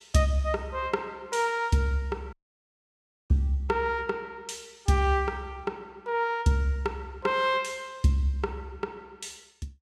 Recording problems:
dropout; at 2.5 s for 1 s

